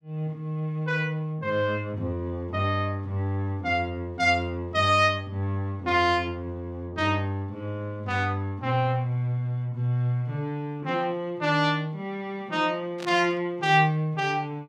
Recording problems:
static burst; at 13 s; peak -8 dB vs average level

